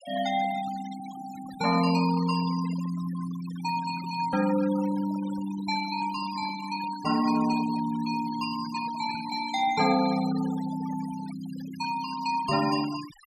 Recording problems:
noise reduction artefacts; signal-to-artefact ratio 15 dB

